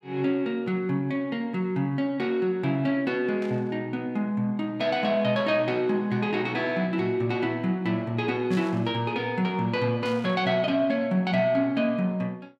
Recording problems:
burst of static; at 3.5 s, at 8.5 s and at 10 s; peak -12 dB vs average level

